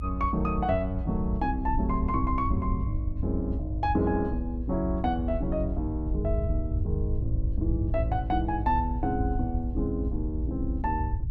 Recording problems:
low-frequency rumble; below 88 Hz, SNR 2 dB

